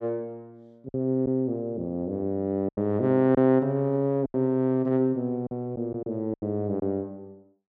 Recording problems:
packet loss; 6% of the sound replaced, filled with silence

